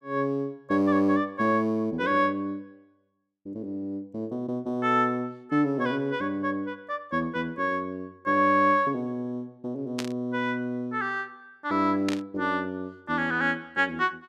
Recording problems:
static burst; at 10 s and at 12 s; peak -2 dB vs average level

